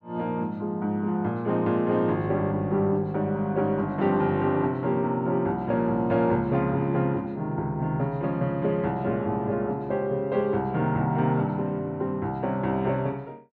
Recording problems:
none

